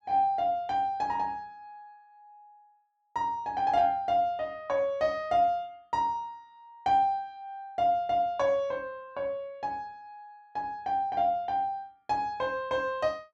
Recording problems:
none

